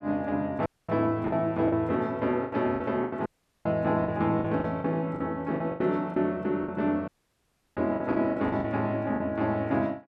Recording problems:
lost packets; 10% of the sound replaced, filled with the last packet
dropout; at 0.5 s, at 3.5 s and at 7 s for 0.5 s

